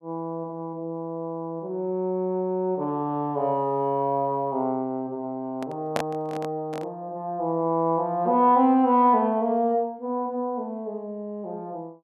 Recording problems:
microphone handling noise; from 5.5 to 7 s; peak +3 dB vs average level

